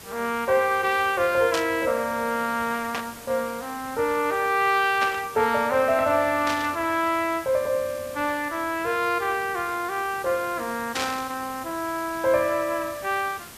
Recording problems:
background hiss; slope -2 dB per octave, SNR 17 dB
burst of static; 5 times, first at 1.5 s; peak 0 dB vs average level

